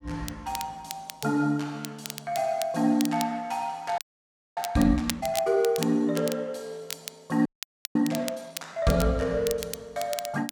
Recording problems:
crackle; vinyl, SNR 11 dB
audio freezing; at 4 s for 0.5 s and at 7.5 s

